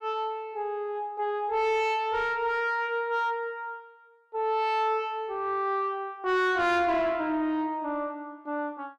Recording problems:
distorted audio; soft clipping, signal-to-distortion ratio 7 dB

